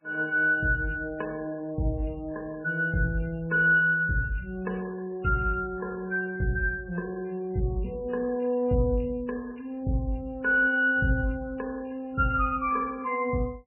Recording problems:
codec artefacts; MP3, log-spectral distance 3 dB, nothing above 2.7 kHz

